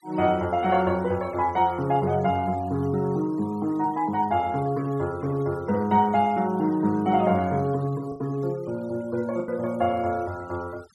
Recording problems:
noise reduction artefacts; signal-to-artefact ratio 24 dB
packet loss; 1.5% of the sound replaced, filled with the last packet

